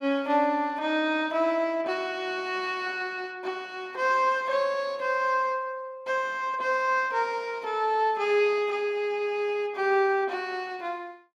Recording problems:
none

